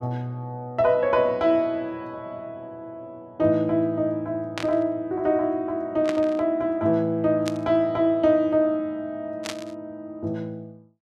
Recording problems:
static burst; 4 times, first at 4.5 s; peak -3 dB vs average level

